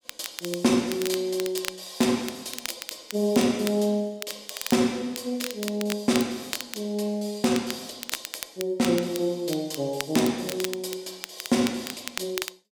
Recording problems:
crackling; vinyl, SNR 9 dB

